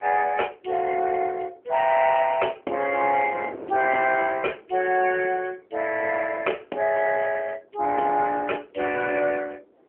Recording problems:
telephone audio; 320 Hz to 3.1 kHz, AMR-NB
wind noise; below 590 Hz, SNR 20 dB

